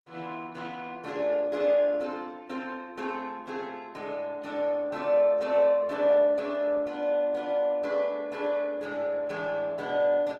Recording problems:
codec artefacts; Opus, log-spectral distance 2 dB

